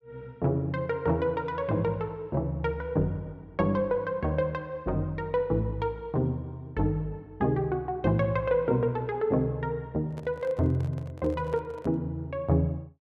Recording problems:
microphone handling noise; from 10 to 12 s; peak -12 dB vs average level

